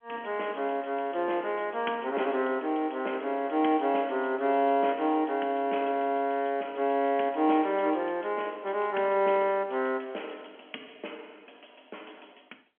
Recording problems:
phone line; 240 Hz to 3.3 kHz, G.711

